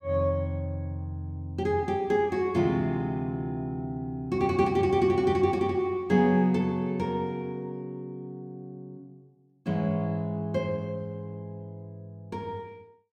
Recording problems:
none

